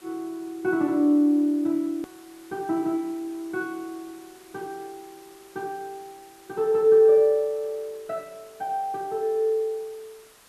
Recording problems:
hiss; slope -2 dB per octave, SNR 27 dB
click at an edit; at 2 s

